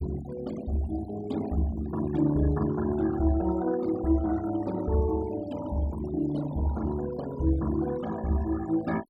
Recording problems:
noise reduction artefacts; signal-to-artefact ratio 15 dB

